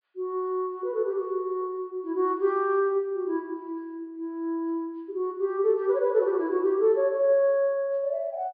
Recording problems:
treble cut off; nothing above 5 kHz

